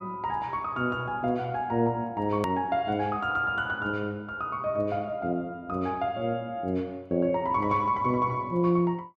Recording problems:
click at an edit; at 2.5 s

